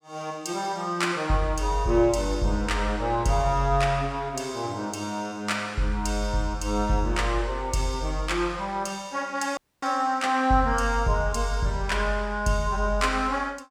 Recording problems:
dropout; at 9.5 s

